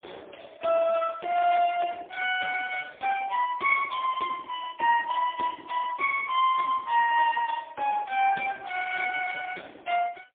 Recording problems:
telephone audio; 430 Hz to 3.3 kHz, AMR-NB, then MP3

